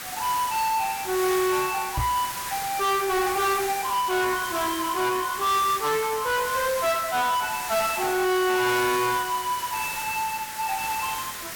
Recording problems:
distortion; soft clipping, signal-to-distortion ratio 8 dB
background hiss; SNR 7 dB
microphone bump; at 2 s; peak 0 dB vs average level

